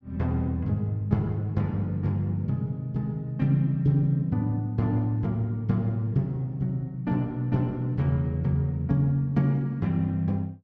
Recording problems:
none

